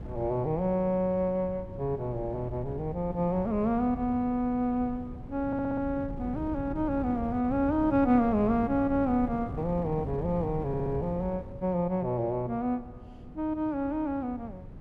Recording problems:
wind on the microphone; below 210 Hz, SNR 12 dB
stutter; at 5.5 s and at 11 s

